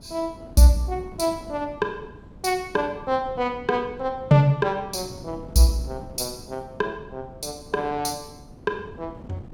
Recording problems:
wind on the microphone; below 300 Hz, SNR 19 dB

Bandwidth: 17.5 kHz